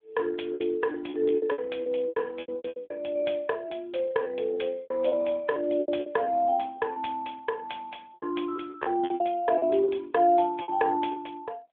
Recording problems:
phone line; 260 Hz to 3.5 kHz, AMR-NB
lost packets; 15% of the sound replaced, filled with repeated pitch periods

